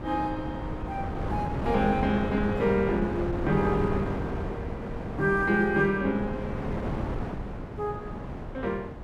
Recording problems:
wind noise; below 500 Hz, SNR 5 dB

